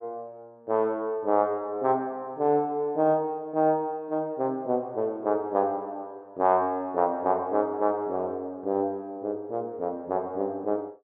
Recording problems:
none

